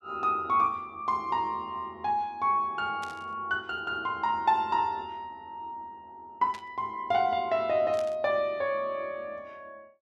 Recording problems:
burst of static; at 3 s, at 6.5 s and at 8 s; peak -11 dB vs average level

